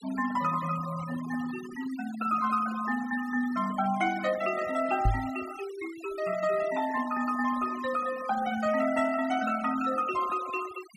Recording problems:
denoising artefacts; signal-to-artefact ratio 15 dB
knock on the microphone; at 5 s; peak +6 dB vs average level

